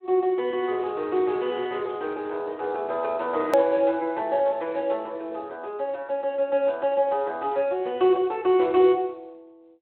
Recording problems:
phone line; 300 Hz to 3.7 kHz, Speex
click at an edit; at 3.5 s

